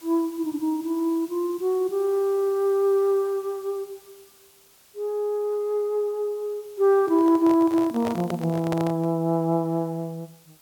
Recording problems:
background hiss; slope 0 dB per octave, SNR 26 dB
microphone handling noise; from 7 to 9 s; peak -3 dB vs average level

